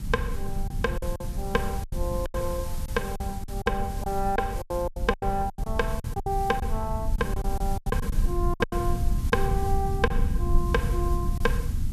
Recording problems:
hiss; SNR 15 dB
rumble; below 84 Hz, SNR 0 dB
lost packets; 12% of the sound replaced, filled with silence

